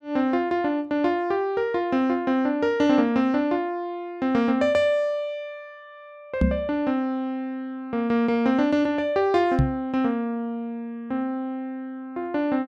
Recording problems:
knock on the microphone; at 6.5 s and at 9.5 s; peak +6 dB vs average level

